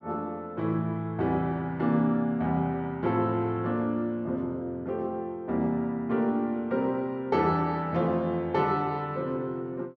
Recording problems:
none

